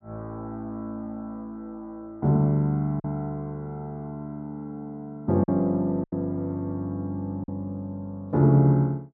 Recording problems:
packet loss; 2% of the sound replaced, filled with silence

